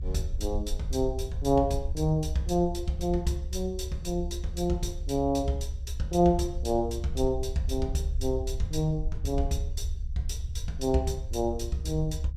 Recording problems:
low-frequency rumble; below 68 Hz, SNR 6 dB

